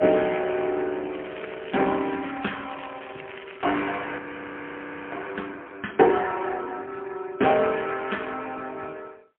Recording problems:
phone line; 220 Hz to 3.2 kHz, AMR-NB, then MP3
crackling; from 1 to 4 s; loose cable, SNR 16 dB
frozen audio; at 4 s for 1 s

